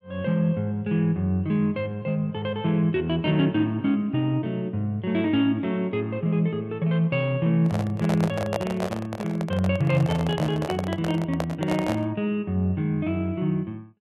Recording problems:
handling noise; from 7.5 to 12 s; peak +1 dB vs average level

